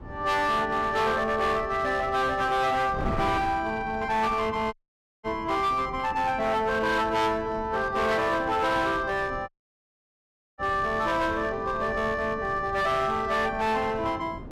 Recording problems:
distorted audio; hard clipping, signal-to-distortion ratio 10 dB
wind noise; below 390 Hz, SNR 15 dB
audio cutting out; at 4.5 s for 0.5 s and at 9.5 s for 1 s

